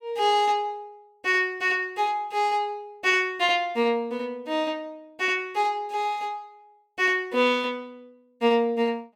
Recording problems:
none

